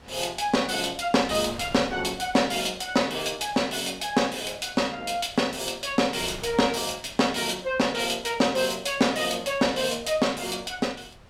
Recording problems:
wind on the microphone; below 1.3 kHz, SNR 22 dB

